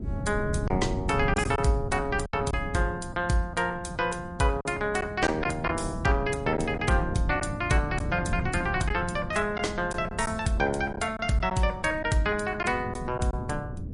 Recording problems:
codec artefacts; MP3, log-spectral distance 2 dB, nothing above 10.4 kHz
wind on the microphone; below 190 Hz, SNR 8 dB
packet loss; 3% of the sound replaced, filled with silence

